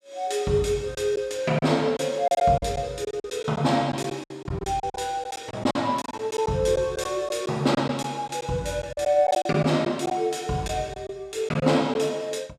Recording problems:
packet loss; 9% of the sound replaced, filled with silence

